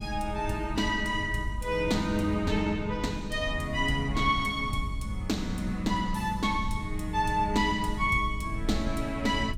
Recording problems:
low-frequency rumble; below 100 Hz, SNR 9 dB

